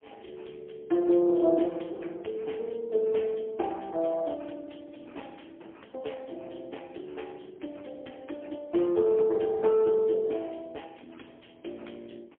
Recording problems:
telephone audio; 240 Hz to 3.4 kHz, AMR-NB, then MP3

